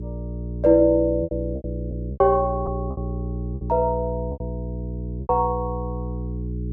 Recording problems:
mains hum; 60 Hz, harmonics up to 420 Hz, SNR 8 dB
lost packets; 9% of the sound replaced, filled with repeated pitch periods

